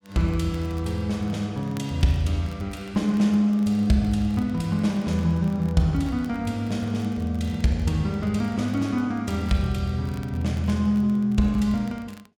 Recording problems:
crackle; vinyl, SNR 29 dB

